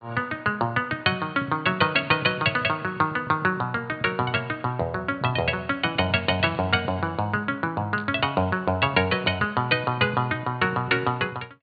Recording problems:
treble missing; nothing above 4.5 kHz
burst of static; at 2 s, at 6.5 s and at 8 s; peak -13 dB vs average level

